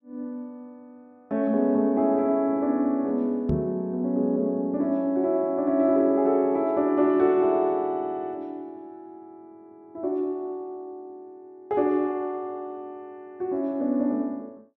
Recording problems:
microphone bump; at 3.5 s; peak +2 dB vs average level

